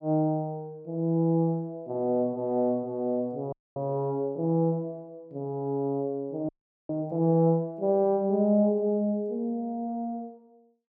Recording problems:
frozen audio; at 3.5 s and at 6.5 s

